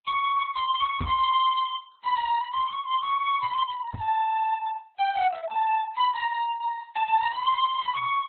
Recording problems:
lossy compression; Vorbis, then Opus, log-spectral distance 3 dB
distortion; hard clipping, uneven, signal-to-distortion ratio 10 dB
knock on the microphone; at 1 s and at 4 s; peak 0 dB vs average level

